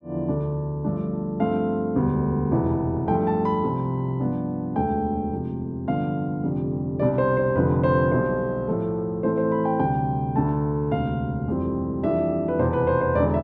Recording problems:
none

